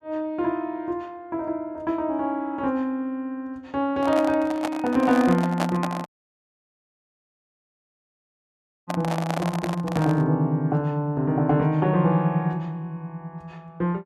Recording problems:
handling noise; from 4 to 10 s; peak +2 dB vs average level
dropout; at 6 s for 3 s

